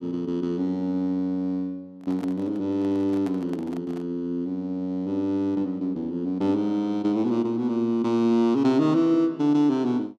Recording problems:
handling noise; from 2 to 4 s; peak -10 dB vs average level

